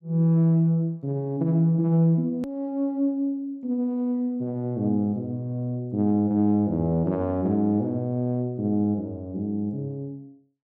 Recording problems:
click at an edit; at 2.5 s

